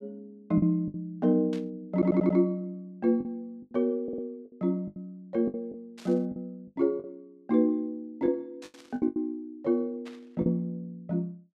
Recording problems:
lost packets; 8% of the sound replaced, filled with the last packet
static burst; 4 times, first at 1.5 s; peak -12 dB vs average level
audio stuttering; at 2 s and at 4 s

